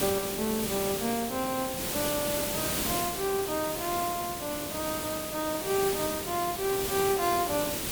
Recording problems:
background hiss; SNR 1 dB

